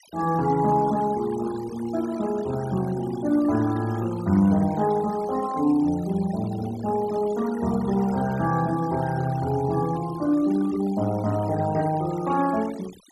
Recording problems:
noise reduction artefacts; signal-to-artefact ratio 18 dB

